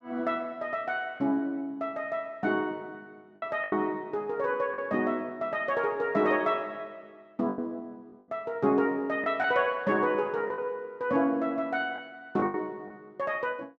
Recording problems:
packet loss; 4% of the sound replaced, filled with the last packet

